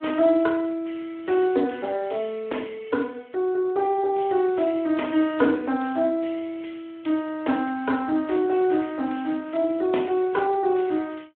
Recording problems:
phone line; 220 Hz to 4 kHz, Speex

